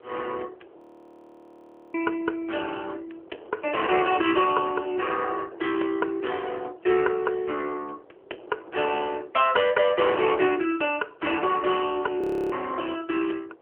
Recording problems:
telephone audio; 300 Hz to 3.3 kHz, AMR-NB
wind on the microphone; below 640 Hz, SNR 23 dB
frozen audio; at 1 s for 1 s and at 12 s

